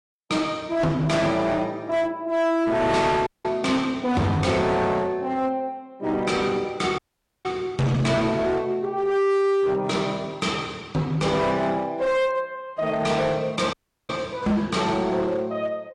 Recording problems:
lossy compression; AAC, log-spectral distance 2 dB, nothing above 10.1 kHz
distortion; hard clipping, signal-to-distortion ratio 8 dB
audio cutting out; at 3.5 s, at 7 s and at 14 s

